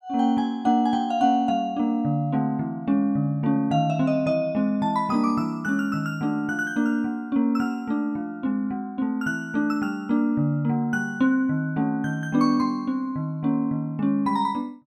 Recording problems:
none

